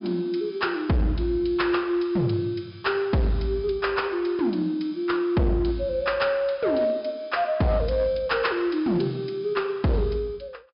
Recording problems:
treble cut off; nothing above 5.5 kHz
distortion; hard clipping, signal-to-distortion ratio 11 dB

